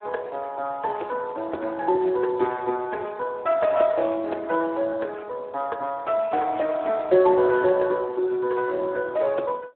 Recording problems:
phone line; 280 Hz to 2.6 kHz, Speex

